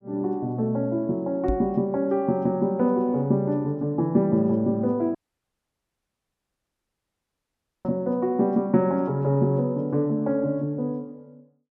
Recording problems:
microphone bump; at 1.5 s; peak -1 dB vs average level
dropout; at 5 s for 2.5 s

